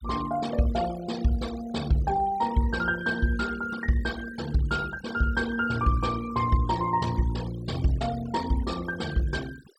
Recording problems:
noise reduction artefacts; signal-to-artefact ratio 15 dB

